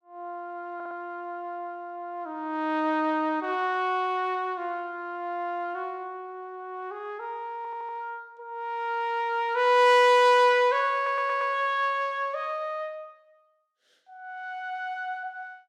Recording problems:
stutter; at 1 s, at 7.5 s and at 11 s

